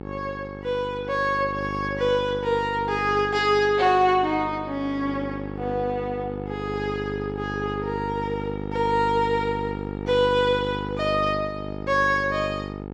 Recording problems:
hum; 50 Hz, harmonics up to 1.4 kHz, SNR 8 dB

